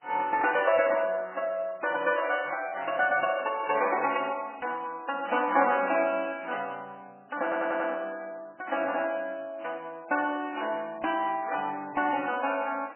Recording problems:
codec artefacts; AAC, then MP3, log-spectral distance 5 dB, nothing above 2.5 kHz
stutter; at 7.5 s

